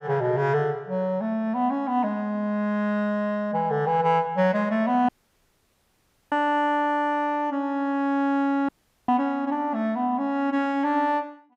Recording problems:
dropout; at 5 s for 1 s and at 8.5 s

